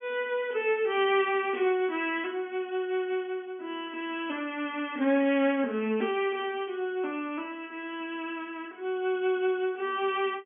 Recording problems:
treble cut off; nothing above 3.3 kHz

